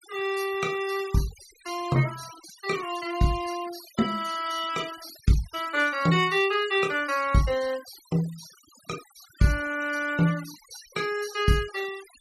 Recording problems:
noise reduction artefacts; signal-to-artefact ratio 16 dB

